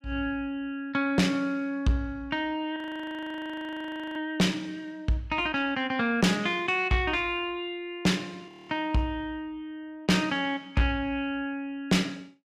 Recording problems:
distorted audio; soft clipping, signal-to-distortion ratio 10 dB
audio freezing; at 3 s for 1.5 s and at 8.5 s

